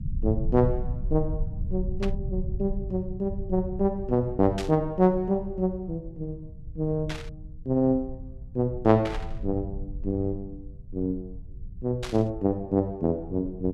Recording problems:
rumble; below 84 Hz, SNR 10 dB
burst of static; 5 times, first at 2 s; peak -4 dB vs average level

